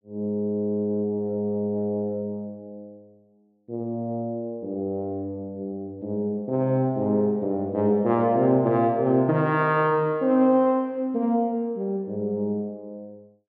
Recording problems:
none

